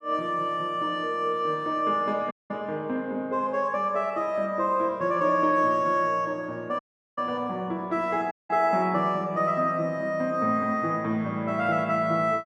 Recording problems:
audio cutting out; at 2.5 s, at 7 s and at 8.5 s

